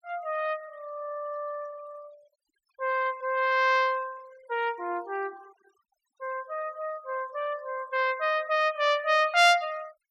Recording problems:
noise reduction artefacts; signal-to-artefact ratio 25 dB

